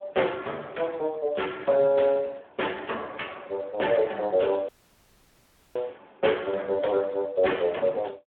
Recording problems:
phone line; 280 Hz to 3.4 kHz, Speex
dropout; at 4.5 s for 1 s

